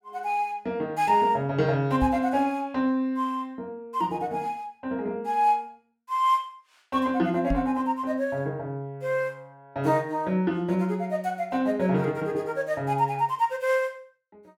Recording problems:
microphone bump; at 2 s and at 7.5 s; peak 0 dB vs average level

